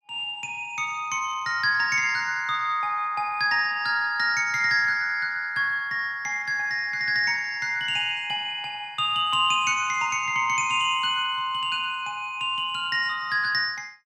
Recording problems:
none

